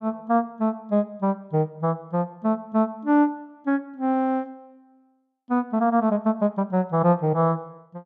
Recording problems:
none

